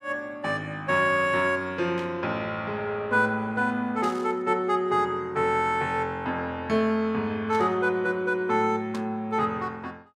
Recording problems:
static burst; 4 times, first at 2 s; peak -11 dB vs average level

